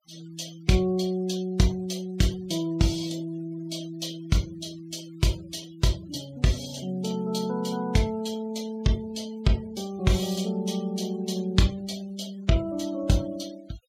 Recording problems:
noise reduction artefacts; signal-to-artefact ratio 20 dB

